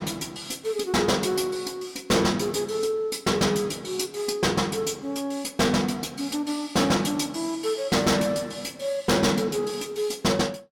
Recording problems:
distorted audio; hard clipping, signal-to-distortion ratio 8 dB

